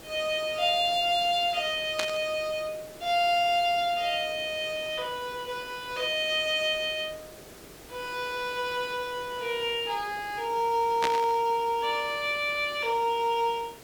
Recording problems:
hiss; SNR 19 dB
static burst; at 2 s and at 11 s; peak +2 dB vs average level

